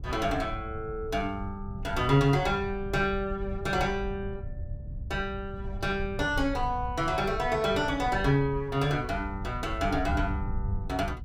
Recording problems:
wind noise; below 94 Hz, SNR 9 dB

